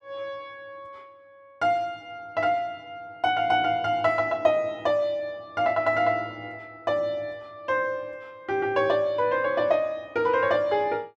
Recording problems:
none

